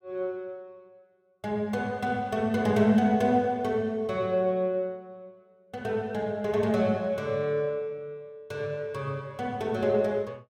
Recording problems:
none

